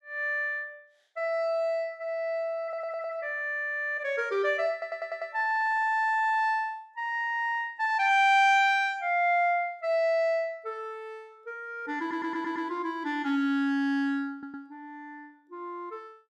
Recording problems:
stutter; 4 times, first at 2.5 s

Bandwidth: 14 kHz